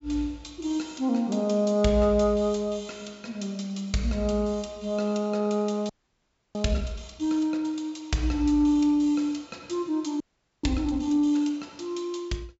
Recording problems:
treble missing; nothing above 8 kHz
audio freezing; at 6 s for 0.5 s and at 10 s

